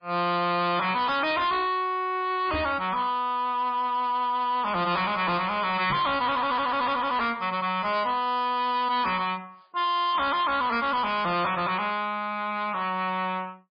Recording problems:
lossy codec; MP3, log-spectral distance 4 dB, nothing above 4.5 kHz
distorted audio; hard clipping, signal-to-distortion ratio 7 dB
knock on the microphone; at 2.5 s and at 6 s; peak -2 dB vs average level

